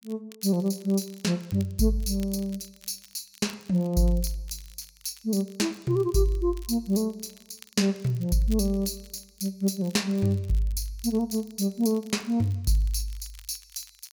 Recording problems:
crackle; vinyl, SNR 24 dB

